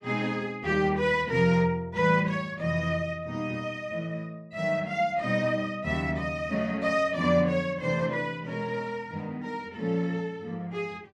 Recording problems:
none

